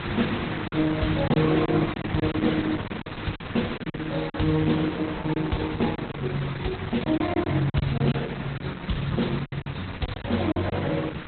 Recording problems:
codec artefacts; Opus, log-spectral distance 13 dB, nothing above 4.1 kHz
background hiss; SNR 9 dB
lost packets; 8% of the sound replaced, filled with silence

